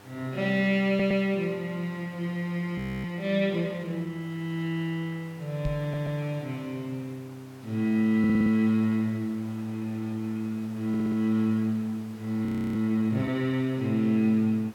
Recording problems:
electrical hum; 50 Hz, harmonics up to 1.5 kHz, SNR 28 dB
background hiss; SNR 25 dB
stutter; 4 times, first at 1 s
frozen audio; at 3 s and at 12 s
microphone bump; at 5.5 s; peak -3 dB vs average level

